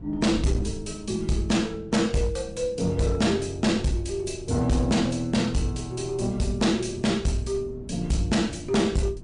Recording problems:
lossy compression; MP3, log-spectral distance 3 dB, nothing above 9.2 kHz
distorted audio; hard clipping, uneven, signal-to-distortion ratio 10 dB
wind on the microphone; below 180 Hz, SNR 16 dB

